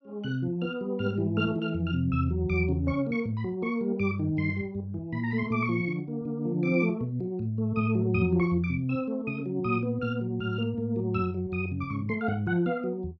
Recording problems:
none

